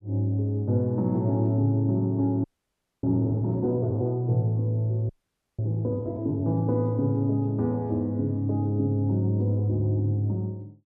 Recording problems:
frozen audio; at 2.5 s for 0.5 s and at 5 s

